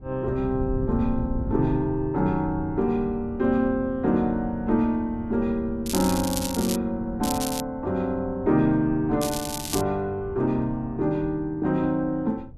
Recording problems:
wind noise; below 130 Hz, SNR 13 dB
crackle; at 6 s, at 7 s and at 9 s; loose cable, SNR 7 dB

